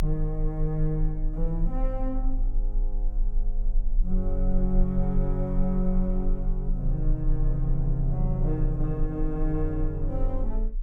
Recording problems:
low-frequency rumble; below 32 Hz, strongest tone 32 Hz, SNR 1 dB

